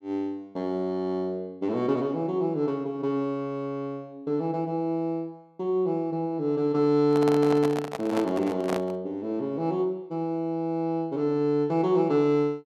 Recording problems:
microphone handling noise; from 7 to 9 s; peak -1 dB vs average level

